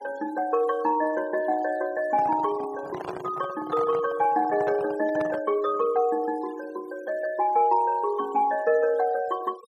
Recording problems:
denoising artefacts; signal-to-artefact ratio 21 dB
microphone handling noise; from 2 to 5.5 s; peak -5 dB vs average level

